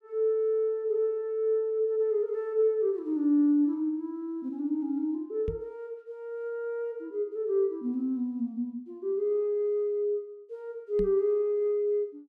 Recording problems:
microphone bump; at 5.5 s and at 11 s; peak -3 dB vs average level

